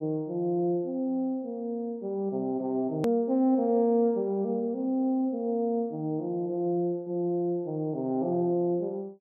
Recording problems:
low-pass filter; nothing above 5.5 kHz
click at an edit; at 3 s

